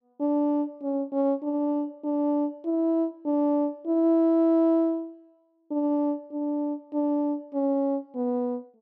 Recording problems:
none

